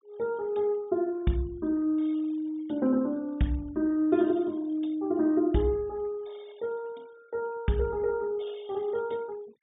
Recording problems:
low-pass filter; nothing above 3.7 kHz
noise reduction artefacts; signal-to-artefact ratio 27 dB

